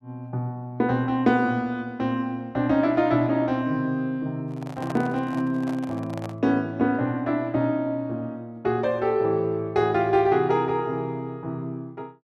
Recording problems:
handling noise; from 4.5 to 6.5 s; peak -5 dB vs average level

